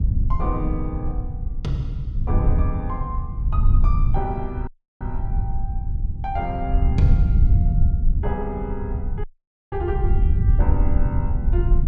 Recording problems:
low-frequency rumble; below 84 Hz, SNR -7 dB
audio cutting out; at 4.5 s and at 9 s

